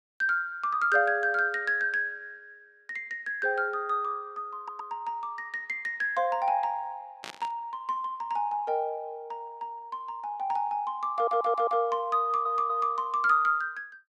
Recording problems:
stutter; at 4.5 s, at 11 s and at 12 s
static burst; at 7 s; peak -7 dB vs average level

